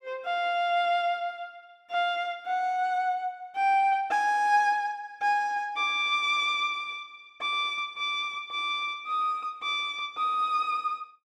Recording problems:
none

